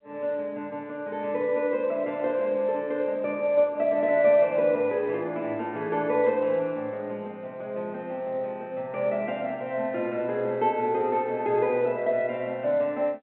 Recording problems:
telephone audio; 220 Hz to 3.7 kHz, G.711

